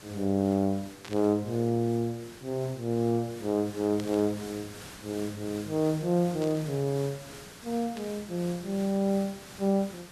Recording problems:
hiss; slope -2 dB per octave, SNR 16 dB
burst of static; 4 times, first at 1 s; peak -9 dB vs average level

